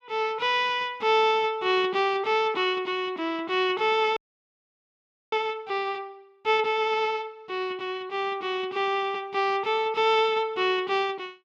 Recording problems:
frozen audio; at 4 s for 1 s

